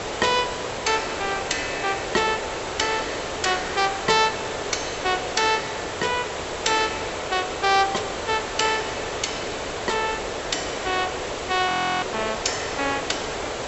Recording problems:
treble missing; nothing above 7.8 kHz
background hiss; SNR 4 dB
audio freezing; at 12 s

